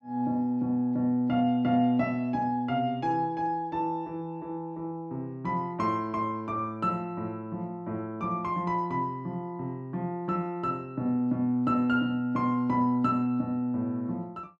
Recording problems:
none

